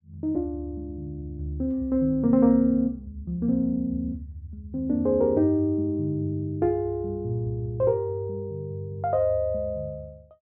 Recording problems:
none

